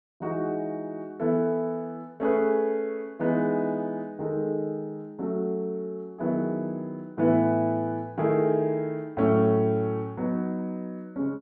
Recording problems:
none

